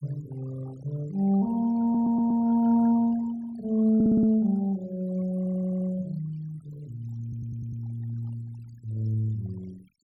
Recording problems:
noise reduction artefacts; signal-to-artefact ratio 24 dB
stutter; 4 times, first at 2 s

